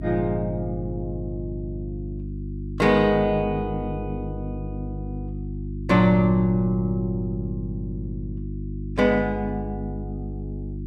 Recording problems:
hum; 50 Hz, harmonics up to 350 Hz, SNR 9 dB

